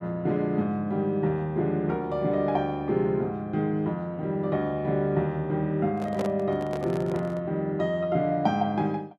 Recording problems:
microphone handling noise; from 6 to 7.5 s; peak -2 dB vs average level

